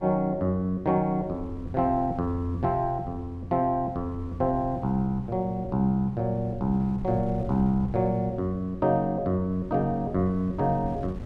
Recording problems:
wind on the microphone; below 140 Hz, SNR 15 dB

